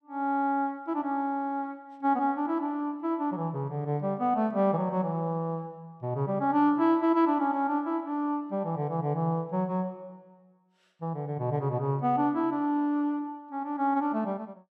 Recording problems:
none

